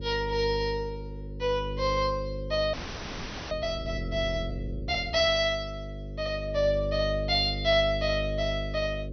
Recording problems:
treble cut off; nothing above 6.2 kHz
electrical hum; 50 Hz, harmonics up to 550 Hz, SNR 8 dB
frozen audio; at 2.5 s for 1 s

